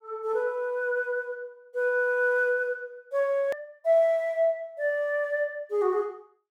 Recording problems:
hard cut with a click; at 3.5 s

